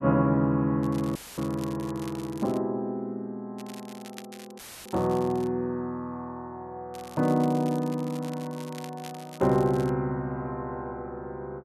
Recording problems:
crackle; from 1 to 2.5 s, from 3.5 to 5.5 s and from 7 to 10 s; loose cable, SNR 20 dB
dropout; at 1 s and at 4.5 s; filled with static

